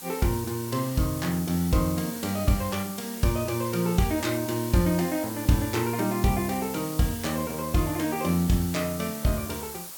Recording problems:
hiss; SNR 10 dB

